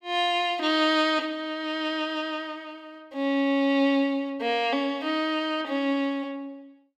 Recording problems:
none

